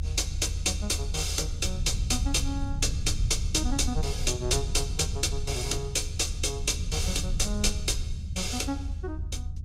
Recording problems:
rumble; below 82 Hz, SNR 4 dB

